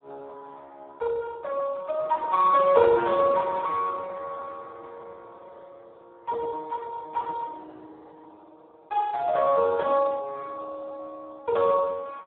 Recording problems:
telephone audio; 320 Hz to 2.2 kHz, Speex

